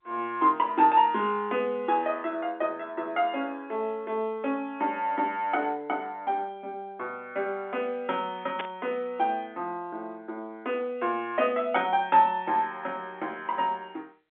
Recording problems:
telephone audio; 240 Hz to 3.6 kHz, G.711
static burst; at 8.5 s; peak -1 dB vs average level

